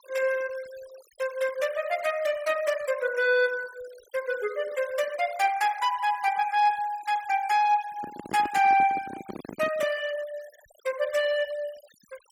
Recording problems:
denoising artefacts; signal-to-artefact ratio 20 dB
handling noise; from 8 to 10 s; peak -6 dB vs average level

